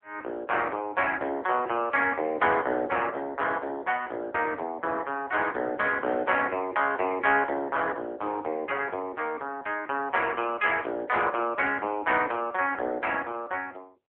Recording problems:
telephone audio; 240 Hz to 3.3 kHz, AMR-NB

